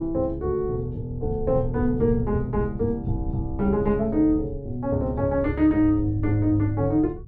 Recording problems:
rumble; below 110 Hz, SNR 12 dB

